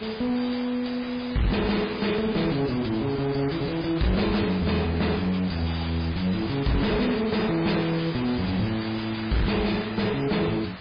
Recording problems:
codec artefacts; MP3, log-spectral distance 11 dB, nothing above 5 kHz
distortion; soft clipping, signal-to-distortion ratio 5 dB
hiss; SNR 13 dB

